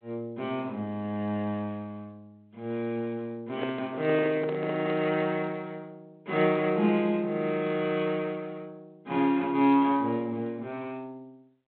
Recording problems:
phone line; 150 Hz to 3.9 kHz, G.726
handling noise; from 3.5 to 5 s; peak -1 dB vs average level

